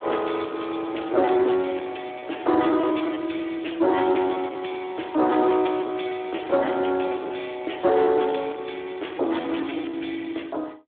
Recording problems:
phone line; 260 Hz to 3.5 kHz, Speex
distorted audio; soft clipping, signal-to-distortion ratio 12 dB
packet loss; 10% of the sound replaced, filled with repeated pitch periods

